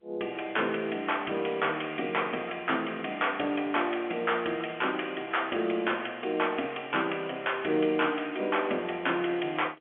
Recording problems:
telephone audio; 260 Hz to 3.4 kHz, G.711

